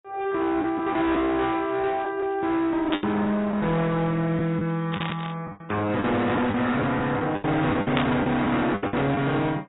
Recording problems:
lossy compression; AAC, log-spectral distance 3 dB, nothing above 3.8 kHz
distorted audio; hard clipping, signal-to-distortion ratio 8 dB
packet loss; 9% of the sound replaced, filled with the last packet
burst of static; at 3 s, at 5 s and at 8 s; peak +2 dB vs average level

